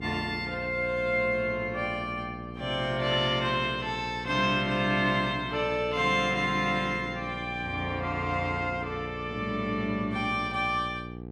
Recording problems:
hum; 60 Hz, harmonics up to 900 Hz, SNR 12 dB

